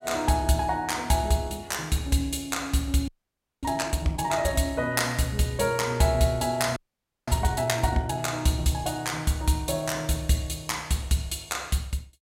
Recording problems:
audio freezing; at 3 s for 0.5 s and at 7 s for 0.5 s

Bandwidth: 16 kHz